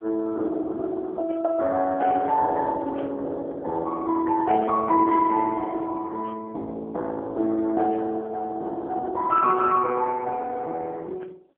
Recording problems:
phone line; 280 Hz to 2.2 kHz, AMR-NB

